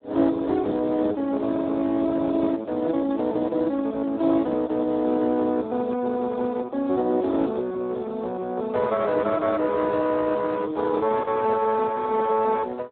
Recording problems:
phone line; 240 Hz to 2.2 kHz, Speex

